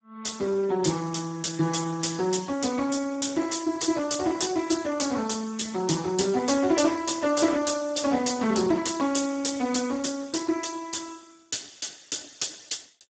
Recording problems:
lossy compression; Speex, log-spectral distance 9 dB, nothing above 7.8 kHz

